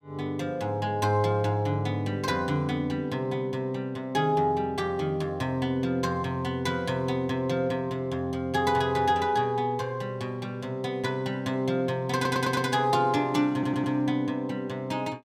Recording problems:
stutter; at 12 s and at 14 s

